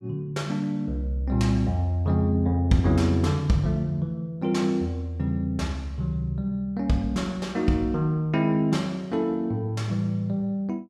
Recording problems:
none

